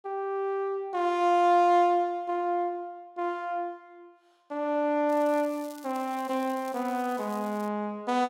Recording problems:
crackle; from 5 to 7.5 s; loose cable, SNR 23 dB

